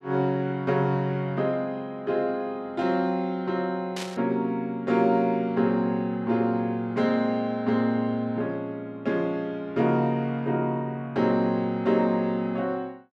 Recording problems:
static burst; at 4 s; peak -5 dB vs average level

